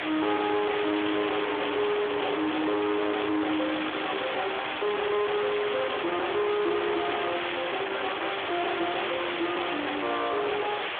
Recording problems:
telephone audio; 280 Hz to 3.6 kHz, Speex
distortion; hard clipping, signal-to-distortion ratio 6 dB
hiss; SNR 4 dB

